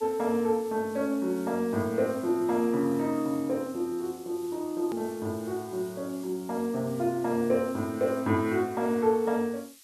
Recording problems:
hiss; slope +4 dB per octave, SNR 21 dB
click at an edit; at 5 s

